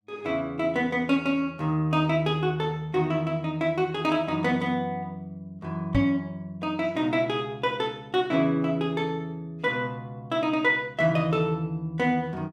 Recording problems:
microphone thump; at 6 s; peak +3 dB vs average level

